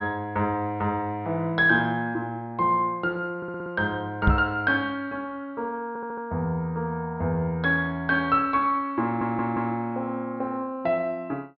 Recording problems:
treble cut off; nothing above 5.5 kHz
stutter; at 3.5 s, at 6 s and at 9 s
knock on the microphone; at 4.5 s; peak +8 dB vs average level

